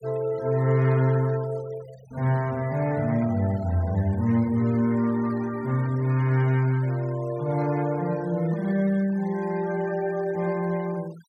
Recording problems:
denoising artefacts; signal-to-artefact ratio 23 dB

